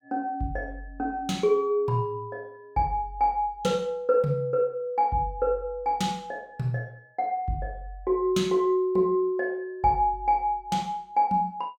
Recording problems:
none

